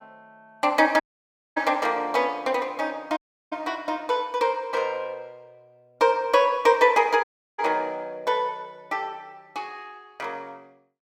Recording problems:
audio cutting out; at 1 s for 0.5 s, at 3 s and at 7 s

